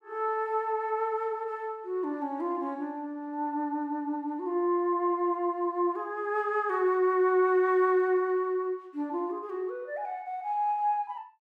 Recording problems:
none

